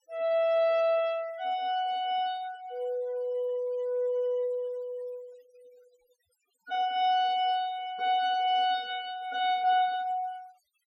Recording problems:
denoising artefacts; signal-to-artefact ratio 24 dB

